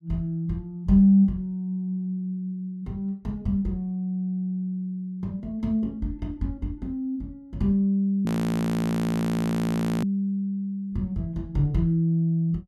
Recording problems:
frozen audio; at 8.5 s for 2 s

